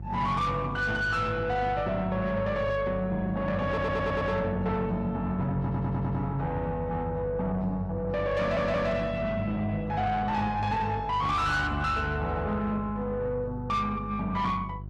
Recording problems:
codec artefacts; Opus, log-spectral distance 2 dB, nothing above 13.1 kHz
distorted audio; soft clipping, signal-to-distortion ratio 10 dB
electrical hum; 50 Hz, harmonics up to 400 Hz, SNR 11 dB
stutter; at 3.5 s, at 5.5 s and at 8.5 s

